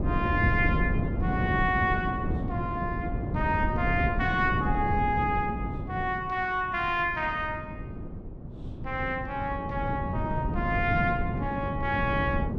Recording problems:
wind on the microphone; below 240 Hz, SNR 3 dB

